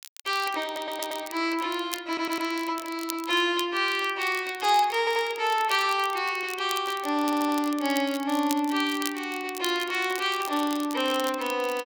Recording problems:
crackle; vinyl, SNR 14 dB
audio stuttering; 4 times, first at 0.5 s

